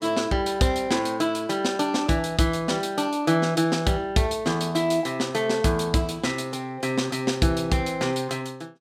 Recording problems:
none

